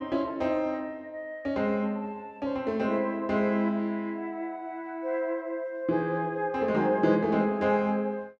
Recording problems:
none

